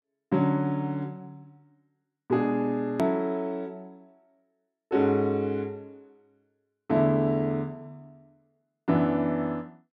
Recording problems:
edit click; at 3 s

